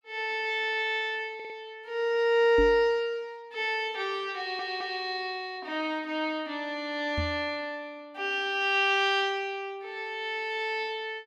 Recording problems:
audio stuttering; at 1.5 s and at 4.5 s
knock on the microphone; at 2.5 s and at 7 s; peak 0 dB vs average level

